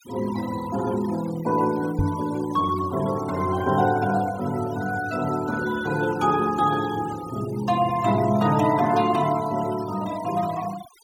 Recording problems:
noise reduction artefacts; signal-to-artefact ratio 17 dB
microphone thump; at 2 s; peak +5 dB vs average level

